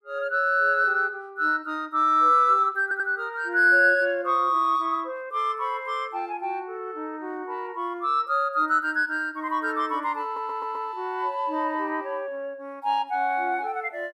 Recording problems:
stutter; at 3 s and at 10 s

